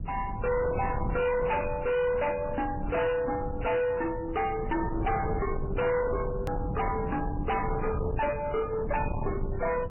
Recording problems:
lossy compression; MP3, then MP3, log-spectral distance 3 dB, nothing above 2.8 kHz
distorted audio; soft clipping, signal-to-distortion ratio 7 dB
rumble; below 420 Hz, SNR 5 dB
edit click; at 6.5 s

